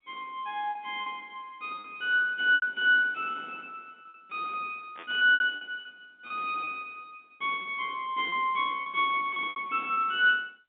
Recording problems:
phone line; 150 Hz to 3.7 kHz, G.711
lost packets; 12% of the sound replaced, filled with repeated pitch periods
static burst; at 5 s; peak -13 dB vs average level

